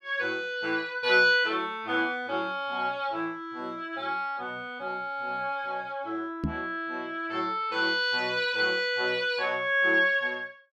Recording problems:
microphone bump; at 6.5 s; peak +2 dB vs average level

